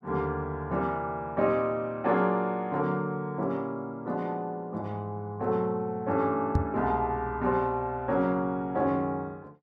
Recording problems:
microphone bump; at 6.5 s; peak +7 dB vs average level

